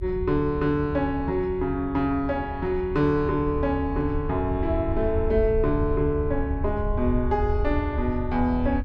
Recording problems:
low-frequency rumble; below 82 Hz, SNR 6 dB

